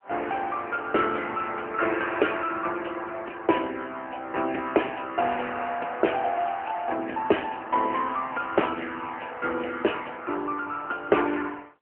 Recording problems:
telephone audio; 260 Hz to 3.1 kHz, AMR-NB

